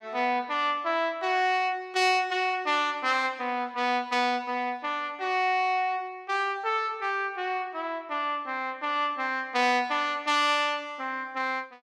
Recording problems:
none

